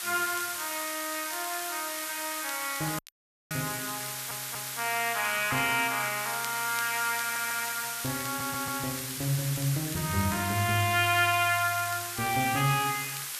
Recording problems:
background hiss; SNR 4 dB
crackle; vinyl, SNR 20 dB
dropout; at 3 s for 0.5 s
stutter; at 4 s, at 7 s and at 8.5 s

